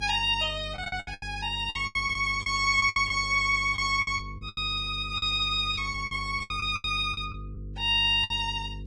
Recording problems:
lossy codec; Vorbis, log-spectral distance 2 dB, nothing above 11 kHz
hum; 50 Hz, harmonics up to 500 Hz, SNR 15 dB
packet loss; 13% of the sound replaced, filled with the last packet

